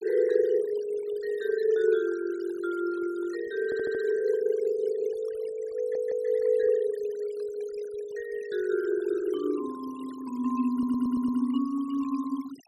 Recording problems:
noise reduction artefacts; signal-to-artefact ratio 22 dB
stutter; at 3.5 s, at 6 s and at 11 s

